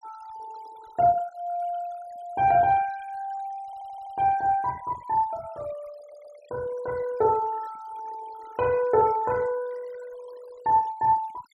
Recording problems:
denoising artefacts; signal-to-artefact ratio 22 dB
audio stuttering; at 3.5 s and at 6 s

